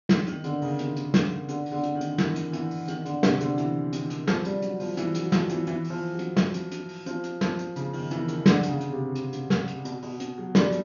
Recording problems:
low-pass filter; nothing above 6.7 kHz

